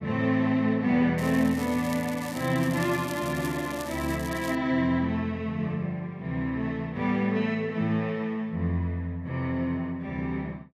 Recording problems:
crackling; from 1 to 4.5 s; loose cable, SNR 15 dB

